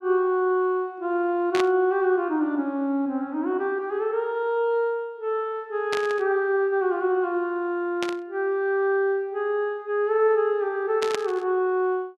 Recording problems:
burst of static; 4 times, first at 1.5 s; peak -1 dB vs average level

